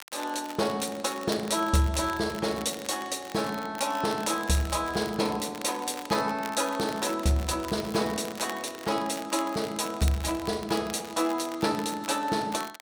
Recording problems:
crackle; vinyl, SNR 15 dB

